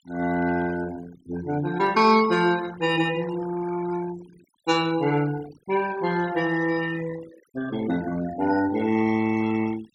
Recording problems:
denoising artefacts; signal-to-artefact ratio 17 dB

